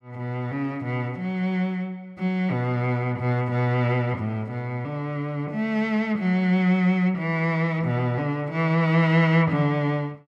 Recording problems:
none

